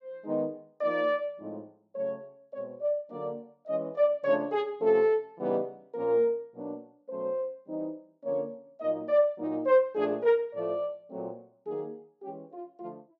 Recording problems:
none

